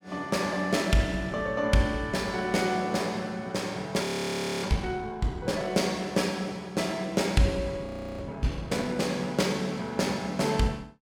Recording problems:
audio freezing; at 4 s for 0.5 s and at 8 s

